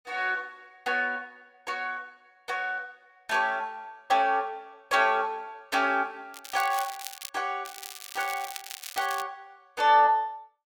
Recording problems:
crackle; at 6.5 s and from 7.5 to 9 s; loose cable, SNR 12 dB

